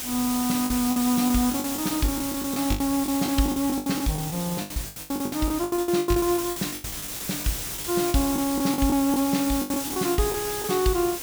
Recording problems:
background hiss; slope -1 dB per octave, SNR 5 dB
lost packets; 18% of the sound replaced, filled with the last packet

